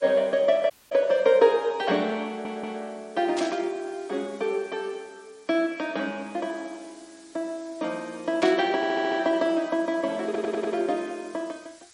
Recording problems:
lossy codec; MP3, log-spectral distance 5 dB
hiss; slope +2 dB per octave, SNR 26 dB
audio cutting out; at 0.5 s
audio stuttering; at 2.5 s, at 9 s and at 10 s
static burst; at 3.5 s and at 8.5 s; peak -2 dB vs average level

